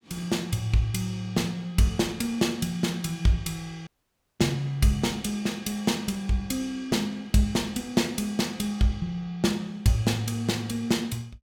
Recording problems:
dropout; at 4 s for 0.5 s

